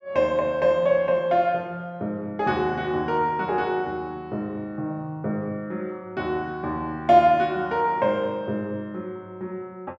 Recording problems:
none

